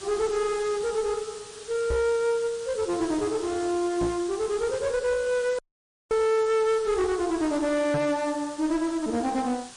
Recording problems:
lossy codec; MP3, log-spectral distance 6 dB, nothing above 9.2 kHz
distortion; hard clipping, uneven, signal-to-distortion ratio 8 dB
background hiss; slope 0 dB per octave, SNR 16 dB
microphone thump; at 2 s, at 4 s and at 8 s; peak 0 dB vs average level
audio cutting out; at 5.5 s for 0.5 s

